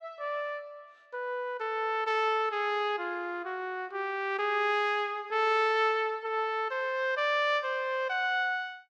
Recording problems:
none

